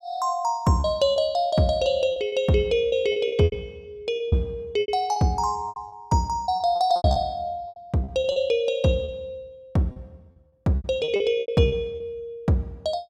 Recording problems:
lost packets; 13% of the sound replaced, filled with repeated pitch periods

